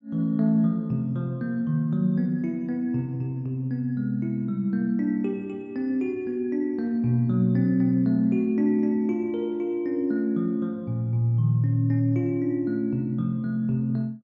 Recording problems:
low-pass filter; nothing above 8 kHz

